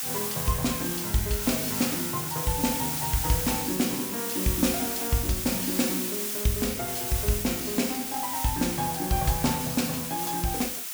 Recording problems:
hiss; slope +3 dB per octave, SNR 1 dB

